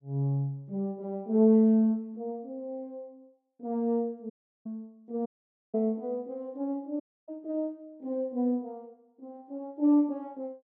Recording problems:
dropout; at 4.5 s, at 5.5 s and at 7 s

